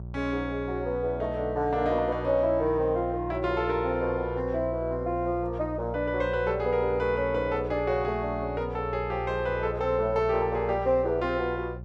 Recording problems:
hum; 60 Hz, harmonics up to 600 Hz, SNR 11 dB

